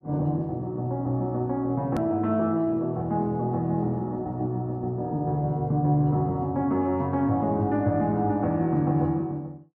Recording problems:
hard cut with a click; at 2 s

